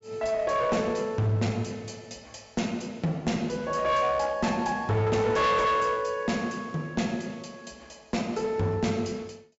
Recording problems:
treble missing; nothing above 8 kHz
distorted audio; hard clipping, uneven, signal-to-distortion ratio 10 dB

